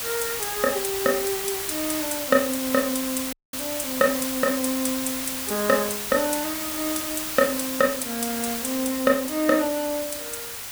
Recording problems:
background hiss; slope +1 dB per octave, SNR 3 dB
crackling; from 2 to 4 s; loose cable, SNR 20 dB
dropout; at 3.5 s

